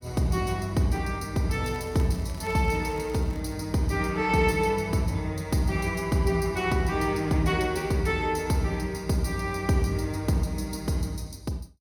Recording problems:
crackling; from 1.5 to 3.5 s; loose cable, SNR 25 dB

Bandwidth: 17.5 kHz